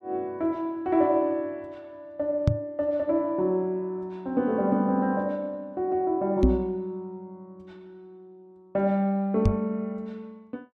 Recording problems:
microphone bump; at 2.5 s, at 6.5 s and at 9.5 s; peak +9 dB vs average level

